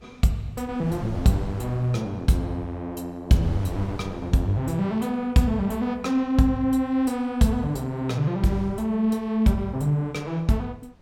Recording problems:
wind on the microphone; below 220 Hz, SNR 16 dB

